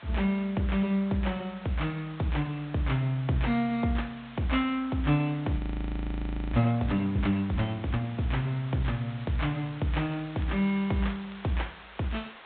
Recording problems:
treble missing; nothing above 4 kHz
hiss; SNR 18 dB
frozen audio; at 5.5 s for 1 s
crackling; from 9 to 12 s; loose cable, SNR 27 dB

